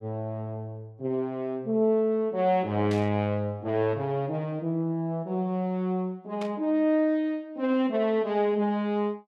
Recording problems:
static burst; at 3 s and at 6.5 s; peak -9 dB vs average level

